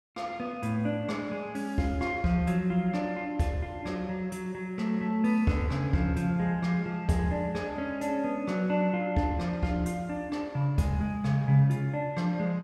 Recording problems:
none

